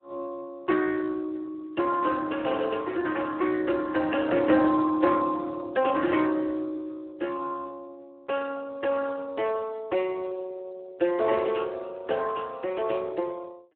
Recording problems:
telephone audio; 280 Hz to 2.8 kHz, Speex

